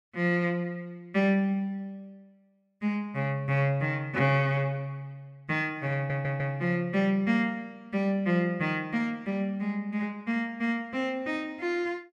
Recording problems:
stutter; at 6 s

